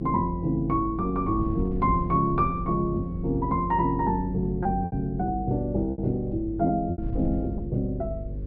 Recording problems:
treble missing; nothing above 5.5 kHz
hum; 50 Hz, harmonics up to 550 Hz, SNR 10 dB
wind noise; below 110 Hz, SNR 13 dB
packet loss; 3% of the sound replaced, filled with repeated pitch periods

